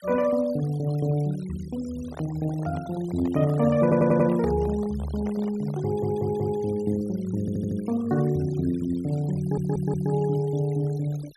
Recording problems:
denoising artefacts; signal-to-artefact ratio 22 dB
handling noise; from 2 to 6.5 s; peak -9 dB vs average level
audio stuttering; 4 times, first at 4 s

